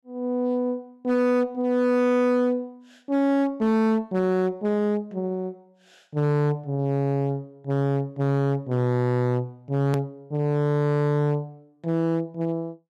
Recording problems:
distorted audio; hard clipping, signal-to-distortion ratio 10 dB
hard cut with a click; at 10 s

